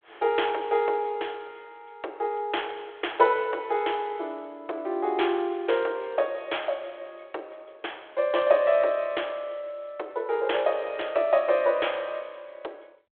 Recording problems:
phone line; 300 Hz to 3.4 kHz, G.726

